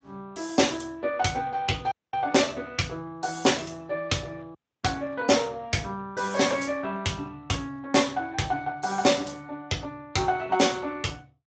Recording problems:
lossy codec; Speex, log-spectral distance 4 dB, nothing above 7.6 kHz
audio cutting out; at 2 s and at 4.5 s

